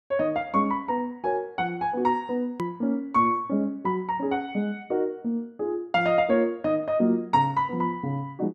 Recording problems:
edit click; at 2.5 s

